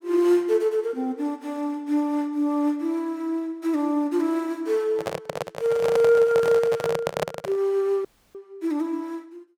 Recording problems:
microphone handling noise; from 5 to 7.5 s; peak +3 dB vs average level
audio cutting out; at 8 s

